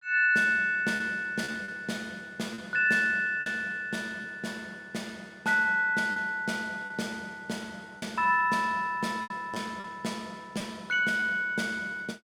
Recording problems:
packet loss; 5% of the sound replaced, filled with repeated pitch periods

